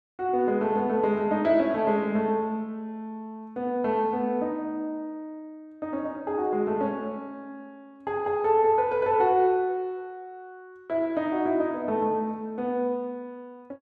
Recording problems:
none

